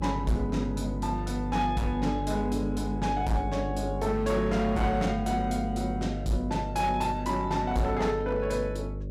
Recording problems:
distortion; hard clipping, signal-to-distortion ratio 12 dB
mains hum; 50 Hz, harmonics up to 600 Hz, SNR 6 dB

